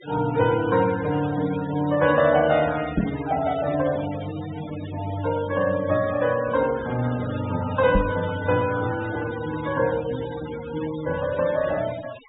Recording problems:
treble missing; nothing above 4 kHz
denoising artefacts; signal-to-artefact ratio 14 dB
microphone thump; at 3 s and at 8 s; peak +4 dB vs average level

